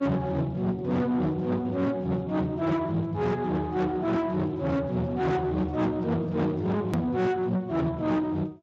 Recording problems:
lossy compression; Speex, log-spectral distance 2 dB, nothing above 13.1 kHz
distortion; soft clipping, signal-to-distortion ratio 6 dB
hard cut with a click; at 7 s

